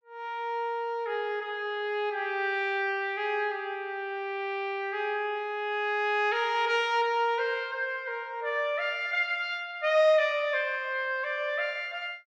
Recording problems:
none

